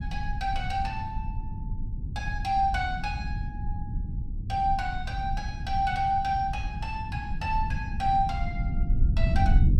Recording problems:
rumble; below 92 Hz, SNR 3 dB

